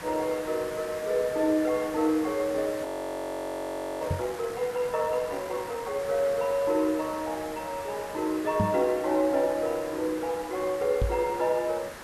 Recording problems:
hiss; SNR 13 dB
audio freezing; at 3 s for 1 s
microphone thump; at 4 s, at 8.5 s and at 11 s; peak +5 dB vs average level

